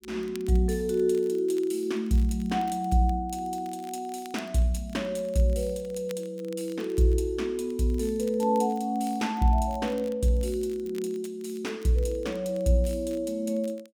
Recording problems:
crackle; vinyl, SNR 26 dB

